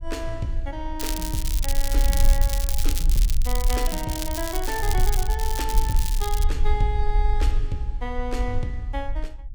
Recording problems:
low-frequency rumble; below 46 Hz, strongest tone 22 Hz, SNR -4 dB
crackle; from 1 to 6.5 s; loose cable, SNR 1 dB

